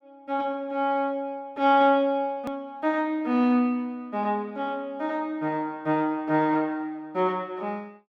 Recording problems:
click at an edit; at 2.5 s

